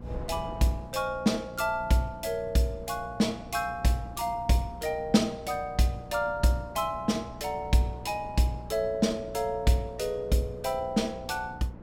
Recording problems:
mains hum; 60 Hz, harmonics up to 840 Hz, SNR 18 dB
wind on the microphone; below 350 Hz, SNR 18 dB

